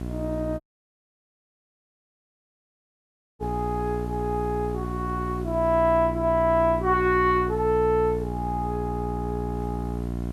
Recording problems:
hum; 60 Hz, harmonics up to 1.1 kHz, SNR 6 dB
background hiss; slope -2 dB per octave, SNR 29 dB
audio cutting out; at 0.5 s for 3 s

